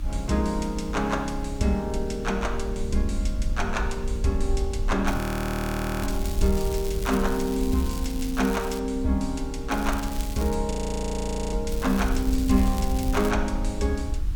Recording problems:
hum; 60 Hz, harmonics up to 300 Hz, SNR 17 dB
hiss; SNR 24 dB
rumble; below 60 Hz, SNR 5 dB
crackling; from 5 to 9 s, at 9.5 s and from 12 to 13 s; loose cable, SNR 13 dB
frozen audio; at 5 s for 1 s and at 11 s for 1 s

